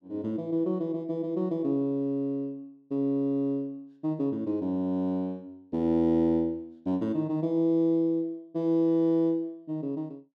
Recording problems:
none

